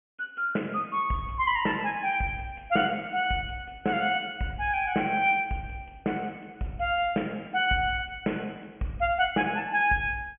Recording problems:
treble cut off; nothing above 3.1 kHz

